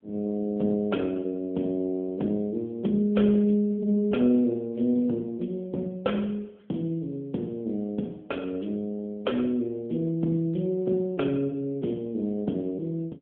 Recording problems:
telephone audio; 130 Hz to 3.3 kHz, AMR-NB

